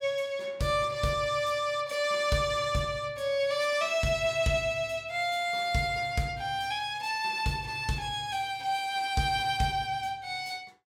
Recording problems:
none

